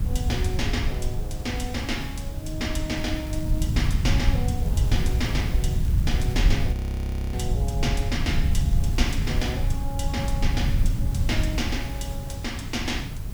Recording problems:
electrical hum; 50 Hz, harmonics up to 650 Hz, SNR 11 dB
hiss; slope -4 dB per octave, SNR 12 dB
low-frequency rumble; below 100 Hz, SNR -4 dB
crackling; from 3 to 7.5 s and from 8.5 to 9.5 s; loose cable, SNR 20 dB
audio freezing; at 6.5 s for 0.5 s

